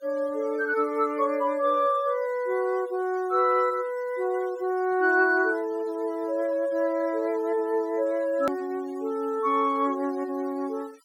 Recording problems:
noise reduction artefacts; signal-to-artefact ratio 26 dB
click at an edit; at 8.5 s

